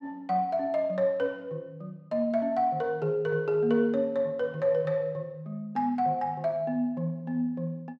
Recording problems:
none

